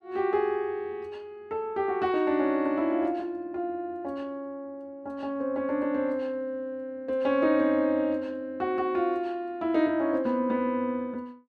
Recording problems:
none

